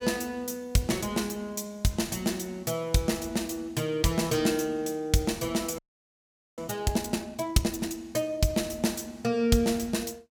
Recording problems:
audio freezing; at 6 s for 1 s

